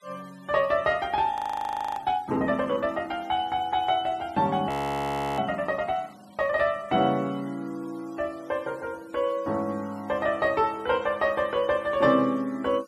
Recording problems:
noise reduction artefacts; signal-to-artefact ratio 26 dB
frozen audio; at 1.5 s for 0.5 s and at 4.5 s for 0.5 s

